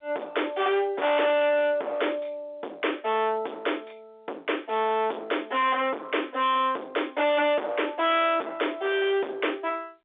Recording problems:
phone line; 300 Hz to 3.6 kHz, G.711
distorted audio; hard clipping, uneven, signal-to-distortion ratio 5 dB

